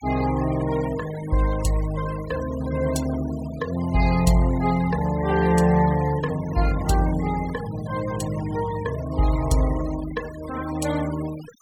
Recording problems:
denoising artefacts; signal-to-artefact ratio 16 dB

